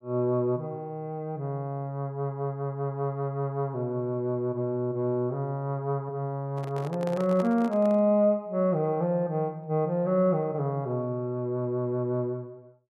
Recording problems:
microphone handling noise; from 6.5 to 8 s; peak -7 dB vs average level

